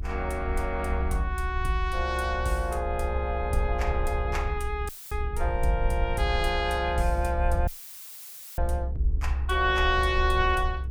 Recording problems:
hum; 50 Hz, harmonics up to 450 Hz, SNR 22 dB
rumble; below 68 Hz, SNR 3 dB
dropout; at 5 s and at 7.5 s for 1 s; filled with static

